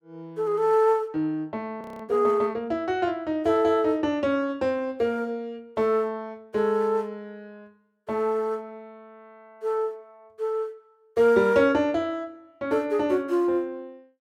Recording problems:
audio freezing; at 2 s

